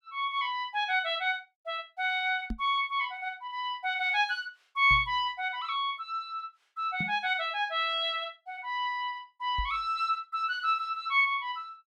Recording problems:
microphone thump; 4 times, first at 2.5 s; peak -2 dB vs average level

